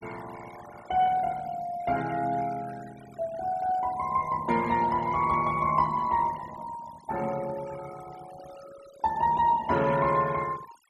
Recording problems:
denoising artefacts; signal-to-artefact ratio 18 dB

